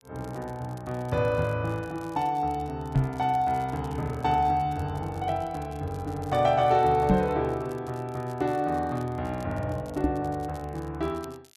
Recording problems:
crackling; vinyl, SNR 27 dB
knock on the microphone; at 3 s, at 7 s and at 10 s; peak +8 dB vs average level

